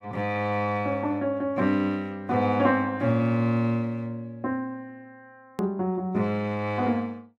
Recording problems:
edit click; at 5.5 s

